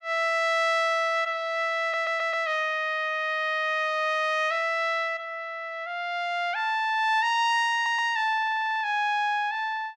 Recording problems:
audio stuttering; at 2 s and at 7.5 s

